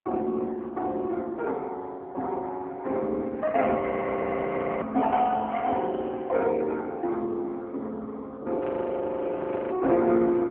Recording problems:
phone line; 240 Hz to 3 kHz, AMR-NB
audio freezing; at 4 s for 1 s and at 8.5 s for 1 s

